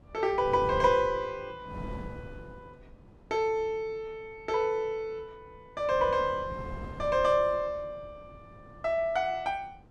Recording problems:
wind noise; below 280 Hz, SNR 16 dB

